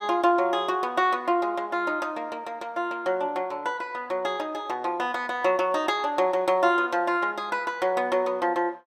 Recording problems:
none

